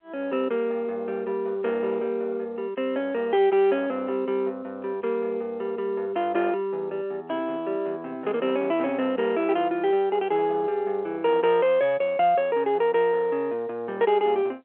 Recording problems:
telephone audio; 300 Hz to 3.3 kHz, G.711

